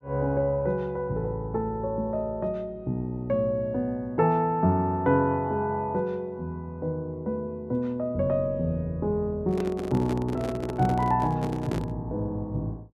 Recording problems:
microphone handling noise; from 9.5 to 12 s; peak -1 dB vs average level

